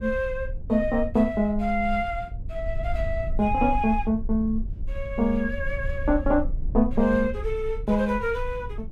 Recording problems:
rumble; below 58 Hz, SNR 9 dB

